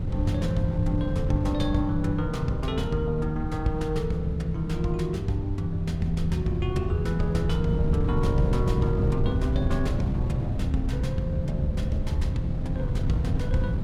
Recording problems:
wind noise; below 140 Hz, SNR 2 dB

